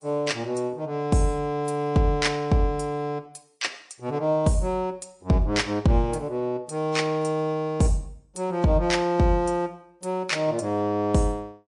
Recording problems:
lossy compression; MP3, log-spectral distance 2 dB, nothing above 10.1 kHz

